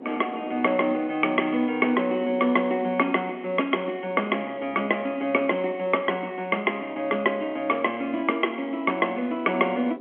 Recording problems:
telephone audio; 220 Hz to 3.3 kHz, G.711
wind noise; below 500 Hz, SNR 20 dB

